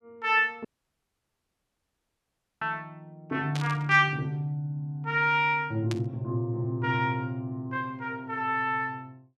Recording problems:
dropout; at 0.5 s for 2 s
burst of static; at 3.5 s and at 6 s; peak -5 dB vs average level

